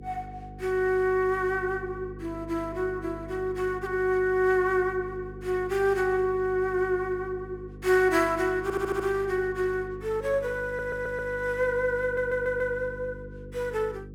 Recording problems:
hum; 50 Hz, harmonics up to 500 Hz, SNR 16 dB
stutter; at 8.5 s, at 11 s and at 12 s

